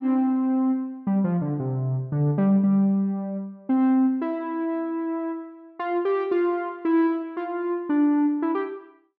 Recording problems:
none

